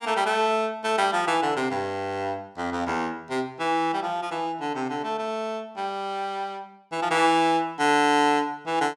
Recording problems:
none

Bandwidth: 17 kHz